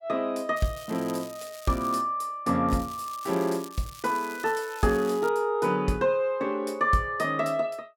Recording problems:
crackle; from 0.5 to 2 s and from 2.5 to 5.5 s; loose cable, SNR 18 dB

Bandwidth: 17 kHz